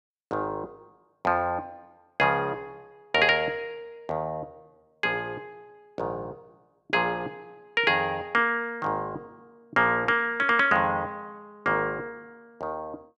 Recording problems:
none

